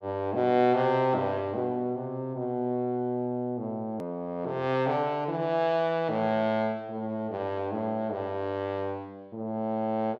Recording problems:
click at an edit; at 4 s

